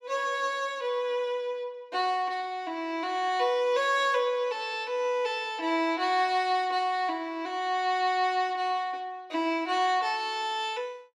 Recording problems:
none

